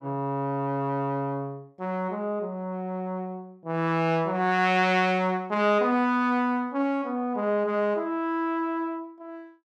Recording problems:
none

